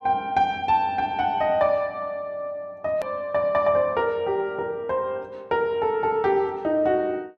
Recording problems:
click at an edit; at 3 s

